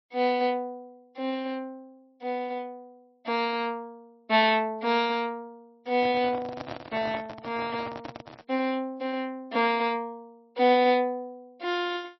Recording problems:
lossy compression; MP3, log-spectral distance 2 dB, nothing above 5.7 kHz
microphone handling noise; from 6 to 8.5 s; peak -5 dB vs average level

